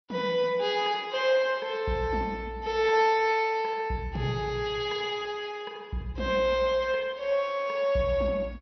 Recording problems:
lossy compression; MP2, log-spectral distance 2 dB, nothing above 5.8 kHz

